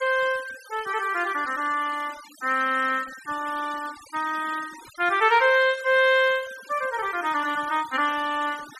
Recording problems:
denoising artefacts; signal-to-artefact ratio 18 dB

